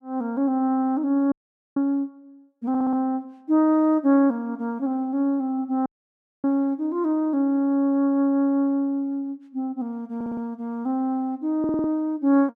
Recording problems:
dropout; at 1.5 s and at 6 s for 0.5 s
audio stuttering; at 2.5 s, at 10 s and at 12 s

